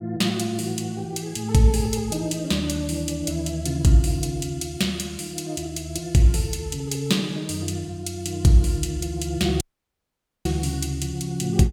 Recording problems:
dropout; at 9.5 s for 1 s

